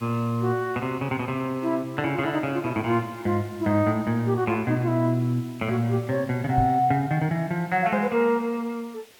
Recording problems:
hiss; slope -1 dB per octave, SNR 25 dB
microphone thump; at 6.5 s; peak +1 dB vs average level

